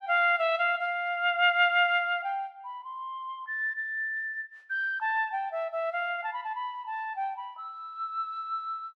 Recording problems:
none

